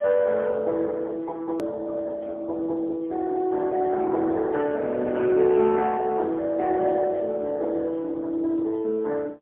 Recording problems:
telephone audio; 260 Hz to 2.2 kHz, AMR-NB, then MP3
hard cut with a click; at 1.5 s

